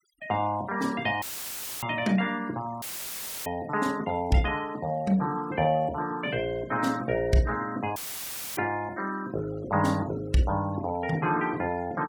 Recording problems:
noise reduction artefacts; signal-to-artefact ratio 22 dB
audio cutting out; at 1 s for 0.5 s, at 3 s for 0.5 s and at 8 s for 0.5 s; filled with static

